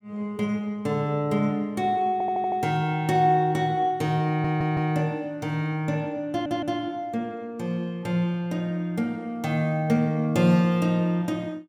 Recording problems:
audio stuttering; at 2 s, at 4.5 s and at 6.5 s

